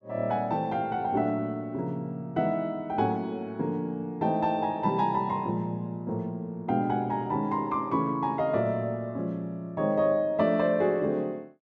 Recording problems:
none

